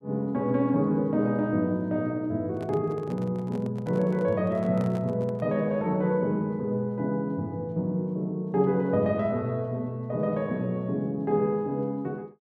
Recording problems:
handling noise; from 2.5 to 5.5 s; peak -9 dB vs average level

